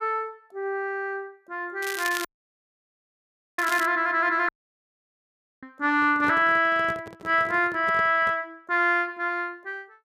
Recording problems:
crackle; from 2 to 4 s; loose cable, SNR 12 dB
dropout; at 2.5 s for 1.5 s and at 4.5 s for 1 s
handling noise; from 6 to 8.5 s; peak -8 dB vs average level

